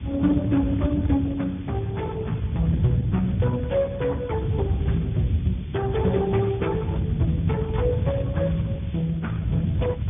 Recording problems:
treble cut off; nothing above 3.5 kHz
lossy compression; Speex, log-spectral distance 2 dB
background hiss; SNR 27 dB
wind noise; below 150 Hz, SNR 2 dB

